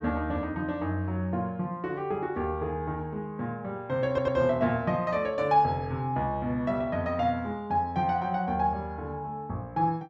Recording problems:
stutter; at 4 s

